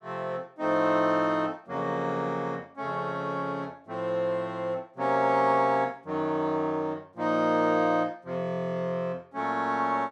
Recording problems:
none

